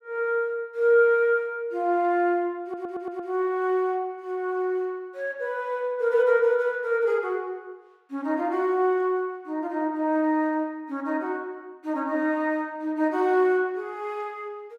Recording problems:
stutter; at 2.5 s

